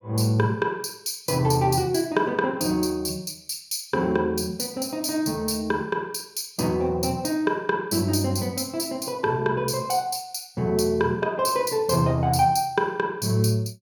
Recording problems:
none

